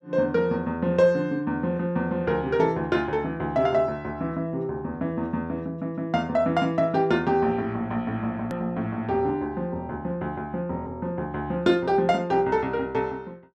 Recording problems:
click at an edit; at 8.5 s

